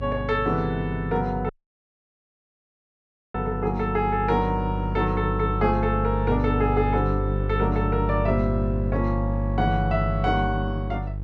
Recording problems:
electrical hum; 50 Hz, harmonics up to 500 Hz, SNR 3 dB
audio cutting out; at 1.5 s for 2 s

